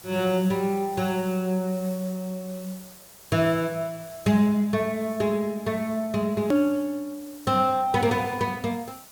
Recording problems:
hiss; slope -2 dB per octave, SNR 20 dB
hard cut with a click; at 6.5 s

